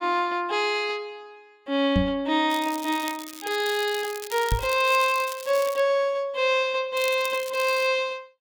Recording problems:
microphone bump; at 2 s and at 4.5 s; peak +4 dB vs average level
crackle; from 2.5 to 6 s and at 7 s; loose cable, SNR 14 dB

